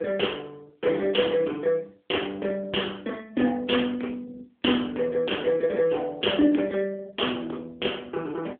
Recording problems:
telephone audio; 260 Hz to 3.4 kHz, AMR-NB

